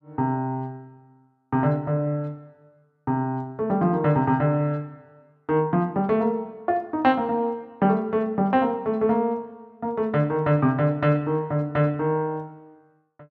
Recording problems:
none

